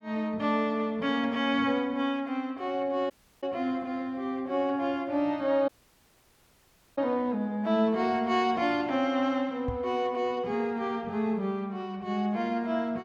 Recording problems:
dropout; at 3 s and at 5.5 s for 1.5 s
microphone thump; at 9.5 s; peak -2 dB vs average level

